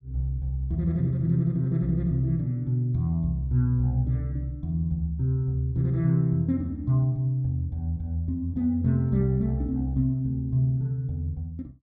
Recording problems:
none

